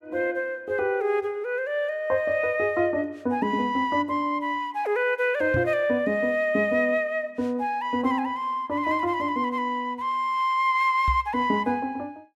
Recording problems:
microphone thump; at 5.5 s and at 11 s; peak 0 dB vs average level

